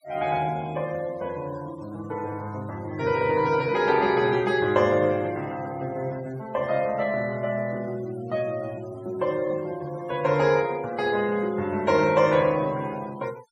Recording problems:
noise reduction artefacts; signal-to-artefact ratio 23 dB

